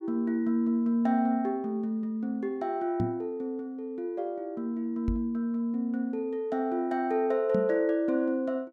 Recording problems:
knock on the microphone; at 3 s, at 5 s and at 7.5 s; peak +3 dB vs average level

